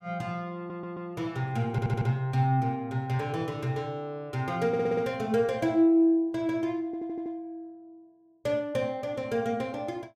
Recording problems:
stutter; 4 times, first at 0.5 s

